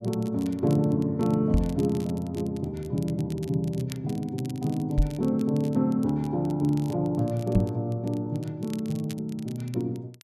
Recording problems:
crackling; vinyl, SNR 22 dB
microphone bump; at 1.5 s, at 5 s and at 7.5 s; peak +8 dB vs average level

